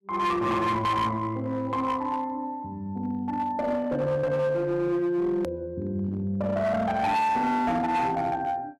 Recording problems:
distorted audio; hard clipping, uneven, signal-to-distortion ratio 11 dB
click at an edit; at 5.5 s

